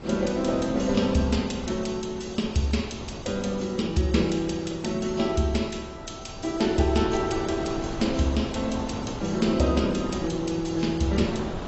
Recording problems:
codec artefacts; AAC, log-spectral distance 4 dB, nothing above 7.8 kHz
wind on the microphone; below 730 Hz, SNR 11 dB

